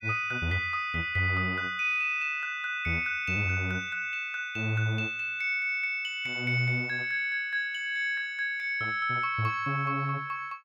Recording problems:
none

